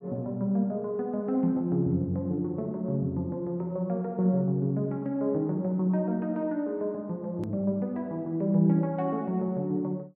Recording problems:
edit click; at 7.5 s

